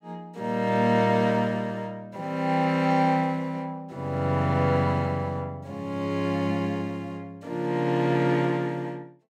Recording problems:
none

